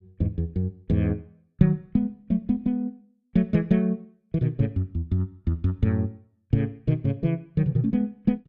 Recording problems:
none

